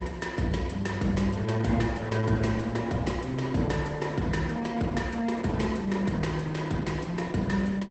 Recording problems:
lossy compression; Opus, log-spectral distance 3 dB, nothing above 8 kHz

